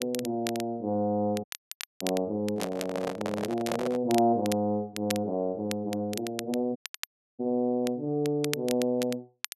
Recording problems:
crackle; vinyl, SNR 11 dB
dropout; at 1.5 s for 0.5 s and at 7 s for 0.5 s
handling noise; from 2.5 to 4 s; peak +1 dB vs average level

